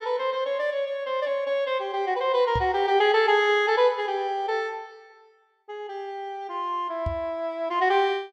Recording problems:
microphone thump; at 2.5 s and at 7 s; peak -2 dB vs average level

